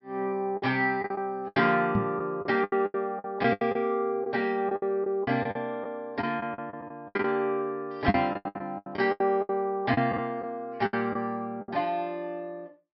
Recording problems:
low-pass filter; nothing above 5.5 kHz
lost packets; 14% of the sound replaced, filled with the last packet
microphone bump; at 2 s and at 8 s; peak +5 dB vs average level

